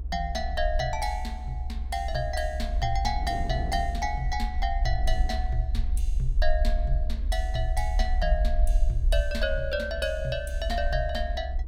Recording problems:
rumble; below 64 Hz, SNR -1 dB
wind noise; below 250 Hz, SNR 14 dB

